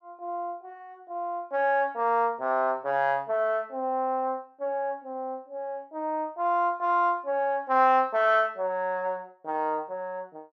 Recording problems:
none

